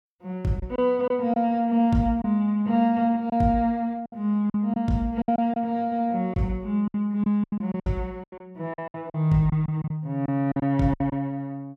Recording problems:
packet loss; 10% of the sound replaced, filled with silence

